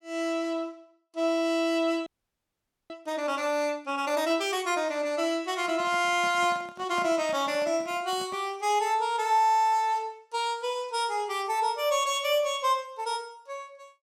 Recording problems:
frozen audio; at 2 s for 1 s
handling noise; from 5.5 to 8.5 s; peak -9 dB vs average level

